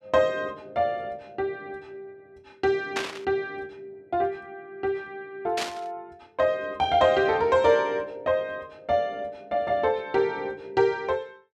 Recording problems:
burst of static; at 3 s and at 5.5 s; peak +1 dB vs average level

